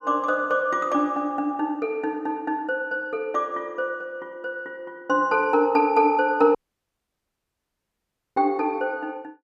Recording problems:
dropout; at 6.5 s for 2 s

